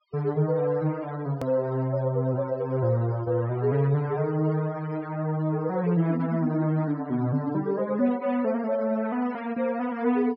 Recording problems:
treble cut off; nothing above 5.4 kHz
noise reduction artefacts; signal-to-artefact ratio 22 dB
click at an edit; at 1.5 s

